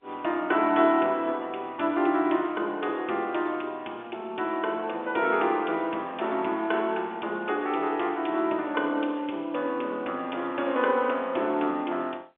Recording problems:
phone line; 240 Hz to 3.5 kHz, G.711

